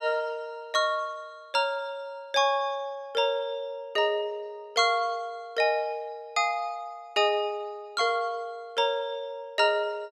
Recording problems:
none

